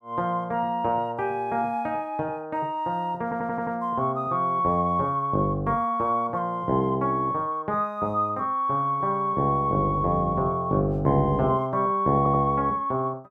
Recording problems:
stutter; at 3 s and at 12 s

